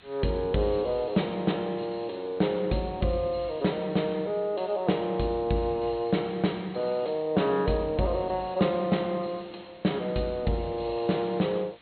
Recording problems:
treble cut off; nothing above 4.3 kHz
hiss; SNR 27 dB

